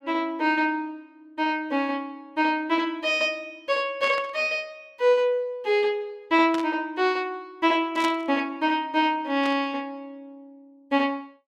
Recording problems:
static burst; 4 times, first at 4 s; peak -6 dB vs average level

